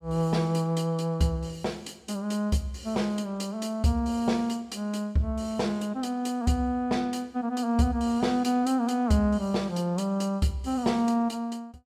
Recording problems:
none

